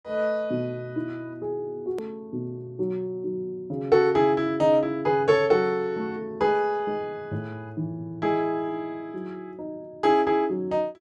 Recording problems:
edit click; at 2 s

